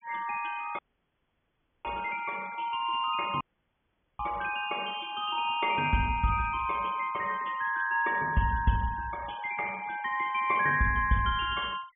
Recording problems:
low-pass filter; nothing above 3.4 kHz
noise reduction artefacts; signal-to-artefact ratio 21 dB
dropout; at 1 s for 1 s and at 3.5 s for 1 s

